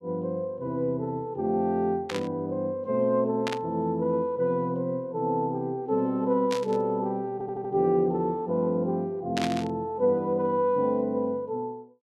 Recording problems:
static burst; 4 times, first at 2 s; peak 0 dB vs average level
audio stuttering; at 7.5 s

